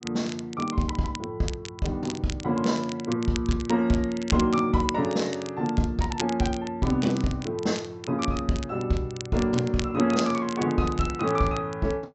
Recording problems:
treble cut off; nothing above 7.8 kHz
crackling; vinyl, SNR 14 dB

